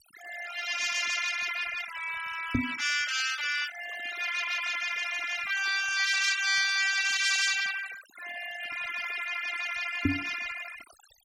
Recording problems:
noise reduction artefacts; signal-to-artefact ratio 11 dB
knock on the microphone; at 2.5 s and at 10 s; peak +6 dB vs average level

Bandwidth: 16.5 kHz